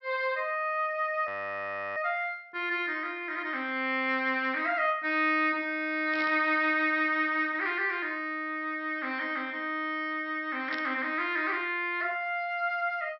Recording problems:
low-pass filter; nothing above 5.6 kHz
frozen audio; at 1.5 s for 0.5 s
burst of static; at 6 s and at 11 s; peak -7 dB vs average level

